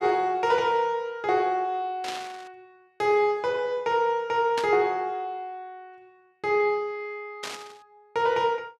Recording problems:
static burst; at 2 s, at 4.5 s and at 7.5 s; peak -3 dB vs average level

